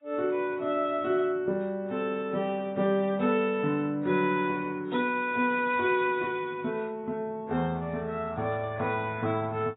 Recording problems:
codec artefacts; AAC, log-spectral distance 2 dB, nothing above 3.6 kHz

